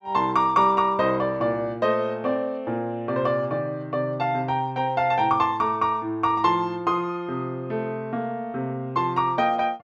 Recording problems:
none

